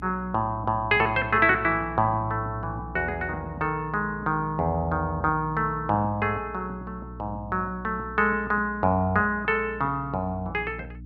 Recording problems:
hum; 60 Hz, harmonics up to 300 Hz, SNR 16 dB

